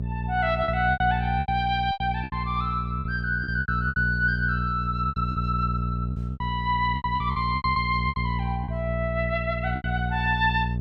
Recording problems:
electrical hum; 60 Hz, harmonics up to 480 Hz, SNR 3 dB
packet loss; 12% of the sound replaced, filled with repeated pitch periods

